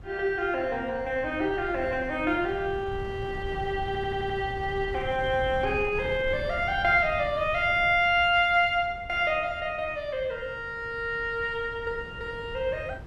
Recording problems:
wind noise; below 180 Hz, SNR 15 dB
stutter; at 4 s

